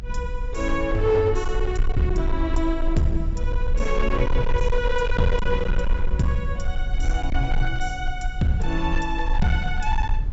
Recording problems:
treble cut off; nothing above 8 kHz
distorted audio; hard clipping, signal-to-distortion ratio 11 dB
rumble; below 48 Hz, strongest tone 24 Hz, SNR 2 dB

